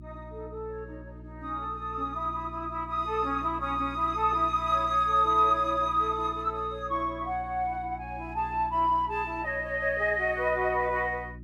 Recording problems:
mains hum; 60 Hz, harmonics up to 360 Hz, SNR 17 dB

